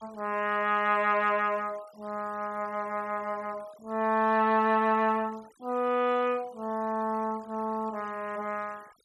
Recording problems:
denoising artefacts; signal-to-artefact ratio 25 dB

